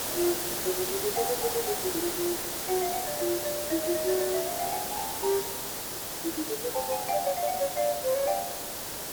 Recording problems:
background hiss; SNR 1 dB

